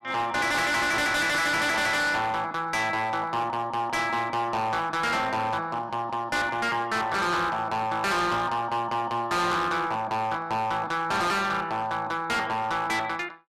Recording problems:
distortion; hard clipping, signal-to-distortion ratio 6 dB

